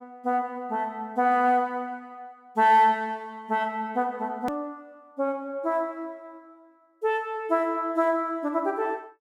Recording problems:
hard cut with a click; at 4.5 s

